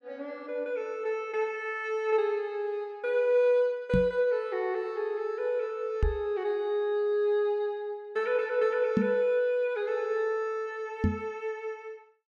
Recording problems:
microphone thump; 4 times, first at 4 s; peak +7 dB vs average level

